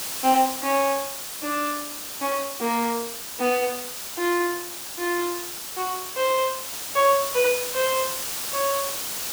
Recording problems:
hiss; slope 0 dB per octave, SNR 5 dB

